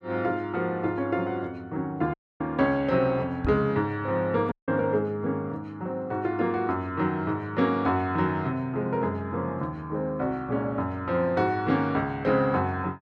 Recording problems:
dropout; at 2 s and at 4.5 s
microphone thump; at 3.5 s; peak +1 dB vs average level

